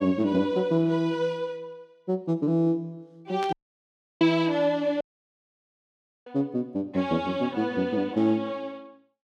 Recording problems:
burst of static; at 3.5 s; peak -8 dB vs average level
dropout; at 3.5 s for 0.5 s and at 5 s for 1.5 s

